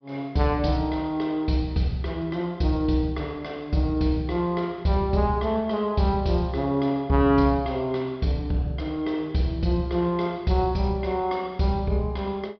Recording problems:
low-pass filter; nothing above 5.5 kHz

